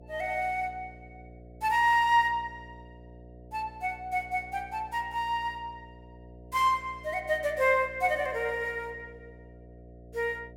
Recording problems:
hum; 60 Hz, harmonics up to 720 Hz, SNR 21 dB

